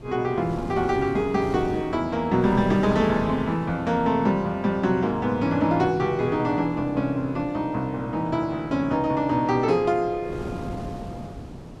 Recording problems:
wind on the microphone; below 380 Hz, SNR 14 dB

